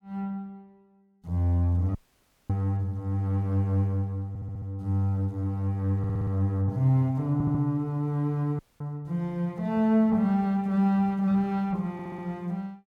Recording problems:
audio cutting out; at 2 s for 0.5 s and at 8.5 s
stutter; 4 times, first at 4.5 s

